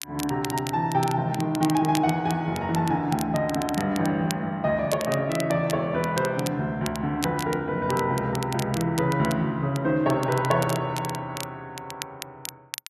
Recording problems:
crackling; vinyl, SNR 13 dB

